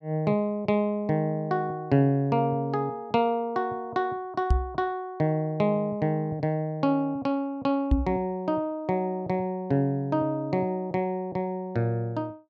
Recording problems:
knock on the microphone; at 4.5 s and at 8 s; peak +8 dB vs average level

